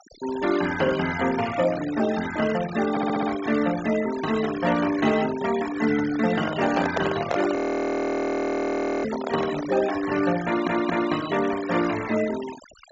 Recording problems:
treble missing; nothing above 8 kHz
noise reduction artefacts; signal-to-artefact ratio 12 dB
audio stuttering; at 3 s and at 10 s
microphone handling noise; from 6.5 to 10 s; peak +2 dB vs average level
audio freezing; at 7.5 s for 1.5 s

